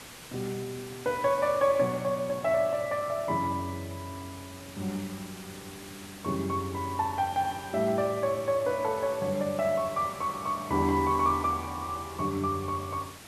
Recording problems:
hiss; slope -2 dB per octave, SNR 16 dB

